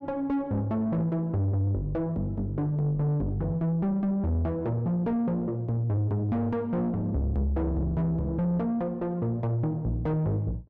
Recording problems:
distortion; soft clipping, signal-to-distortion ratio 7 dB

